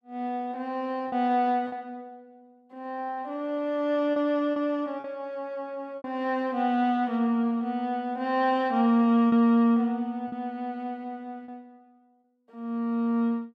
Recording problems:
lost packets; 3% of the sound replaced, filled with repeated pitch periods

